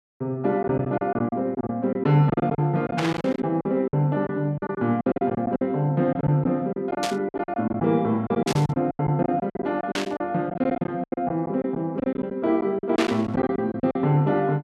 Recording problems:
lost packets; 15% of the sound replaced, filled with silence
burst of static; 5 times, first at 3 s; peak +1 dB vs average level

